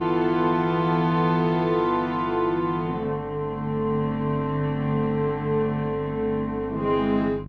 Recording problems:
electrical hum; 50 Hz, harmonics up to 600 Hz, SNR 15 dB

